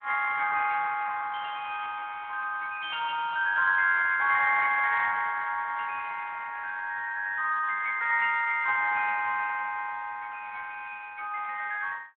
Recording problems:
phone line; 240 Hz to 2.2 kHz, Speex

